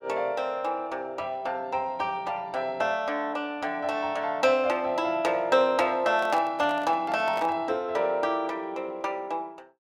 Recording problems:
handling noise; from 6 to 7.5 s; peak -2 dB vs average level

